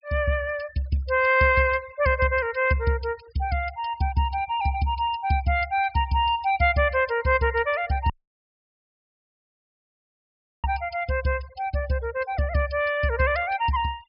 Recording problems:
low-pass filter; nothing above 5.5 kHz
denoising artefacts; signal-to-artefact ratio 25 dB
audio cutting out; at 8 s for 2.5 s

